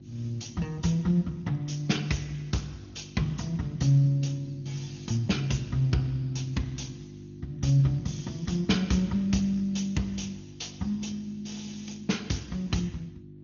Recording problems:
treble missing; nothing above 6.7 kHz
lossy compression; Speex, log-spectral distance 4 dB
hum; 50 Hz, harmonics up to 400 Hz, SNR 16 dB

